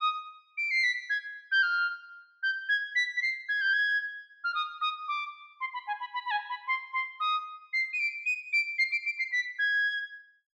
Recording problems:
none

